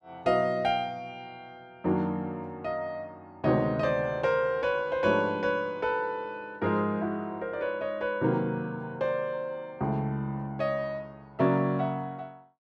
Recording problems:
none

